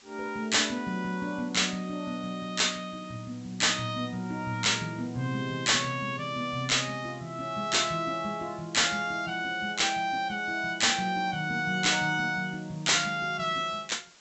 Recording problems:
low-pass filter; nothing above 7.8 kHz
distortion; hard clipping, signal-to-distortion ratio 9 dB
hiss; slope 0 dB per octave, SNR 25 dB

